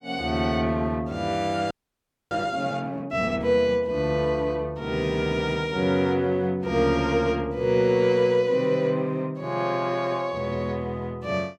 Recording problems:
audio freezing; at 1.5 s for 0.5 s

